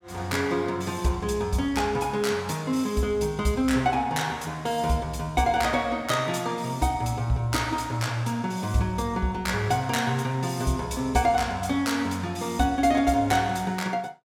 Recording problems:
none

